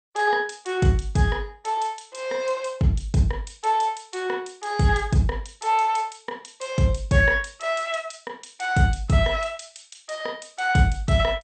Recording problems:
lossy compression; MP2, log-spectral distance 5 dB, nothing above 8.5 kHz

